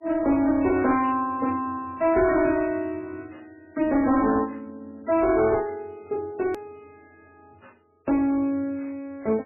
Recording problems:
lossy codec; MP3, log-spectral distance 2 dB, nothing above 13.1 kHz
distorted audio; hard clipping, uneven, signal-to-distortion ratio 10 dB
click at an edit; at 6.5 s

